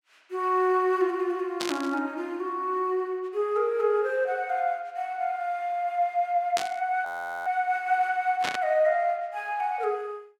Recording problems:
static burst; at 1.5 s, at 6.5 s and at 8.5 s; peak 0 dB vs average level
audio freezing; at 7 s

